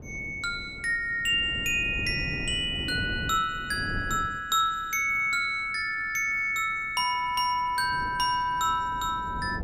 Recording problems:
wind on the microphone; below 270 Hz, SNR 13 dB

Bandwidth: 15 kHz